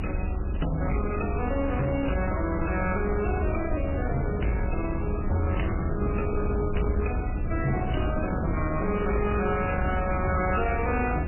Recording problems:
codec artefacts; MP3, log-spectral distance 14 dB, nothing above 2.6 kHz
distorted audio; soft clipping, signal-to-distortion ratio 12 dB
hum; 50 Hz, harmonics up to 1.2 kHz, SNR 13 dB
hiss; SNR 20 dB
low-frequency rumble; below 78 Hz, SNR 4 dB
wind noise; below 310 Hz, SNR 6 dB

